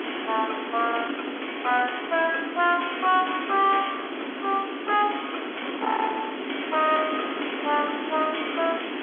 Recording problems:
telephone audio; 260 Hz to 3.4 kHz, G.711
distortion; soft clipping, signal-to-distortion ratio 7 dB
hiss; SNR 7 dB
wind noise; below 1.4 kHz, SNR 14 dB

